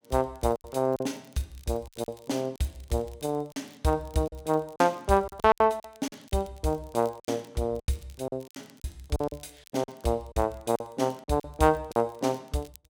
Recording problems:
crackling; vinyl, SNR 28 dB
packet loss; 11% of the sound replaced, filled with silence

